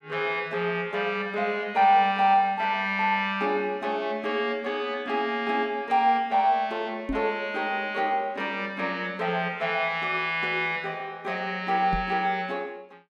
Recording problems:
microphone thump; at 7 s and at 12 s; peak 0 dB vs average level

